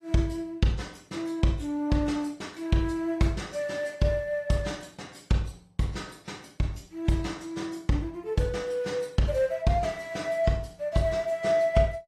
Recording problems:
codec artefacts; AAC, log-spectral distance 3 dB, nothing above 13.5 kHz

